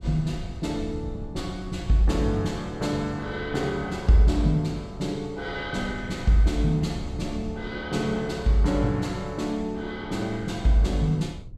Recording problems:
wind on the microphone; below 110 Hz, SNR 14 dB

